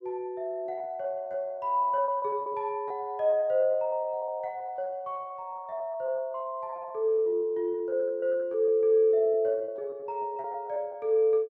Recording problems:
lost packets; 17% of the sound replaced, filled with repeated pitch periods

